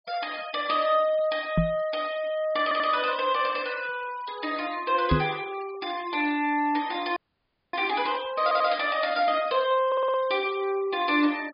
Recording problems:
treble missing; nothing above 5 kHz
denoising artefacts; signal-to-artefact ratio 20 dB
microphone bump; at 1.5 s and at 5 s; peak +6 dB vs average level
stutter; at 2.5 s, at 8.5 s and at 10 s
audio freezing; at 7 s for 0.5 s

